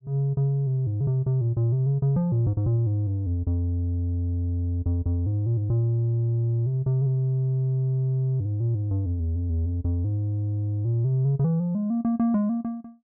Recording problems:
none

